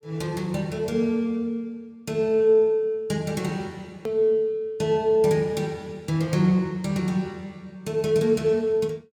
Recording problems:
edit click; at 4 s

